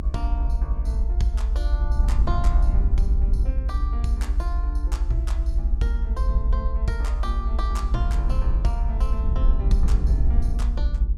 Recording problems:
low-frequency rumble; below 60 Hz, SNR -10 dB

